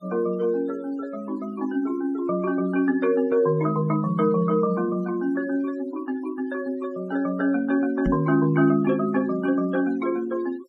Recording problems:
noise reduction artefacts; signal-to-artefact ratio 24 dB
knock on the microphone; at 8 s; peak +4 dB vs average level

